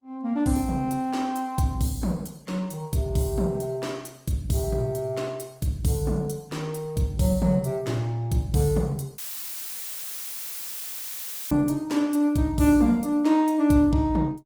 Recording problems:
codec artefacts; Opus, log-spectral distance 3 dB, nothing above 19 kHz
dropout; at 9 s for 2.5 s; filled with static

